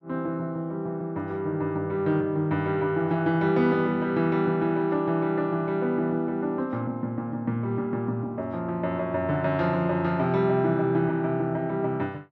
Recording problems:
none

